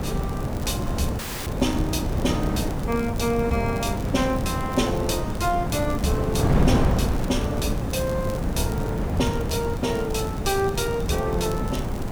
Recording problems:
hiss; SNR 21 dB
wind on the microphone; below 320 Hz, SNR 0 dB
crackle; vinyl, SNR 19 dB
audio cutting out; at 1 s

